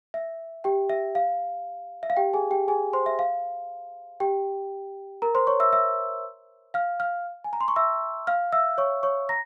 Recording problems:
none

